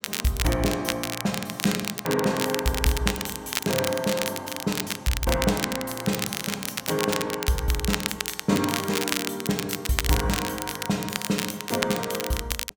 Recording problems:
crackle; vinyl, SNR 3 dB

